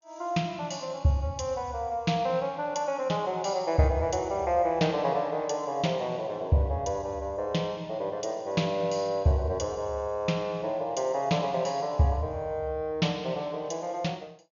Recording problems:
treble missing; nothing above 6.9 kHz

